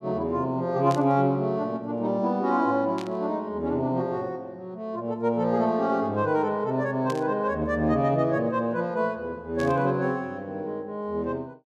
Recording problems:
burst of static; 4 times, first at 1 s; peak -9 dB vs average level

